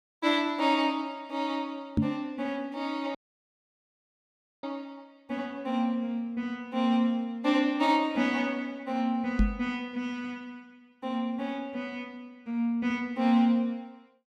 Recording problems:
microphone bump; at 2 s and at 9.5 s; peak +8 dB vs average level
audio cutting out; at 3 s for 1.5 s

